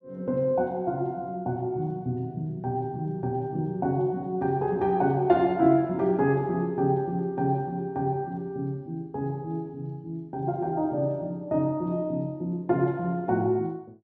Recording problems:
none

